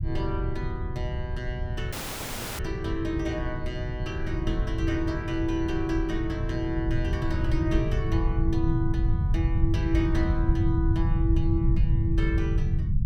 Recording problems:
low-frequency rumble; below 120 Hz, SNR -3 dB
audio cutting out; at 2 s for 0.5 s

